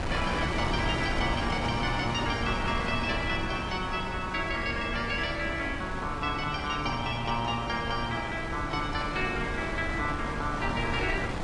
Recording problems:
codec artefacts; AAC, log-spectral distance 3 dB
wind on the microphone; below 1 kHz, SNR 4 dB

